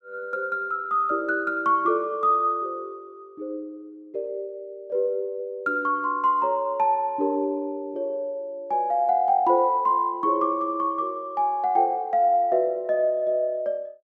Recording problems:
none

